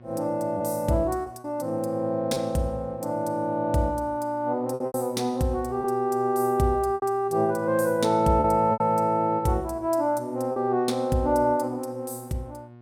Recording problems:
electrical hum; 60 Hz, harmonics up to 1.4 kHz, SNR 22 dB
lost packets; 4% of the sound replaced, filled with repeated pitch periods

